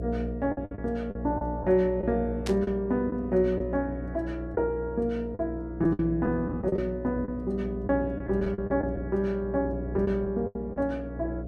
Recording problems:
hum; 60 Hz, harmonics up to 720 Hz, SNR 9 dB
packet loss; 8% of the sound replaced, filled with the last packet
static burst; at 2.5 s; peak -3 dB vs average level

